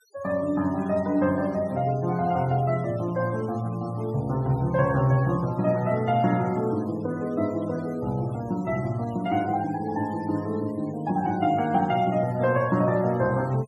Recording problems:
noise reduction artefacts; signal-to-artefact ratio 23 dB

